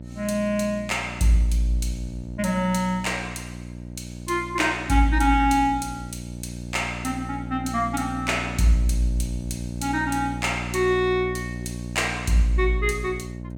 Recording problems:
hum; 60 Hz, harmonics up to 660 Hz, SNR 10 dB

